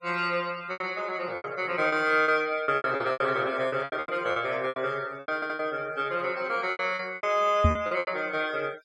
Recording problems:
denoising artefacts; signal-to-artefact ratio 23 dB
packet loss; 15% of the sound replaced, filled with repeated pitch periods
stutter; at 5.5 s
microphone thump; at 7.5 s; peak +8 dB vs average level

